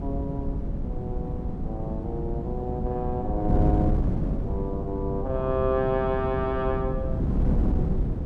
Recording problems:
wind on the microphone; below 190 Hz, SNR -1 dB

